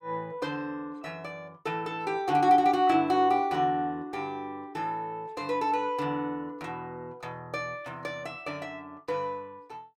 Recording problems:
none

